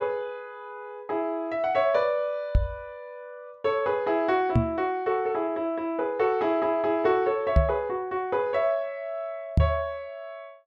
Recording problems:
knock on the microphone; 4 times, first at 2.5 s; peak +9 dB vs average level

